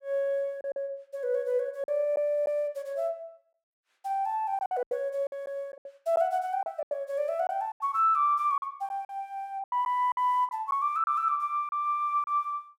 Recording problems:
packet loss; 8% of the sound replaced, filled with silence

